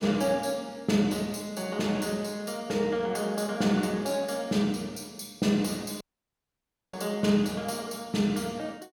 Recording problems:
audio cutting out; at 6 s for 1 s

